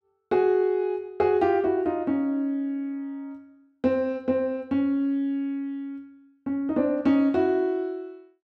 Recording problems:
none

